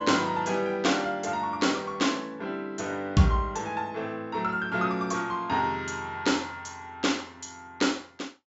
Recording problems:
low-pass filter; nothing above 8 kHz

